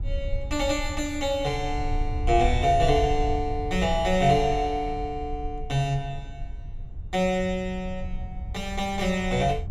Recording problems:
rumble; below 74 Hz, SNR 8 dB

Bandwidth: 13.5 kHz